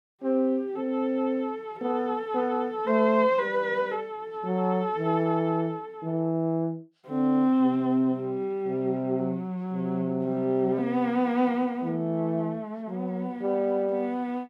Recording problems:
none

